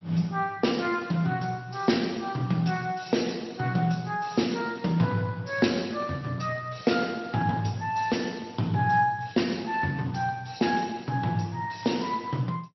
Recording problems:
treble missing; nothing above 5.8 kHz
lossy codec; Speex, log-spectral distance 5 dB

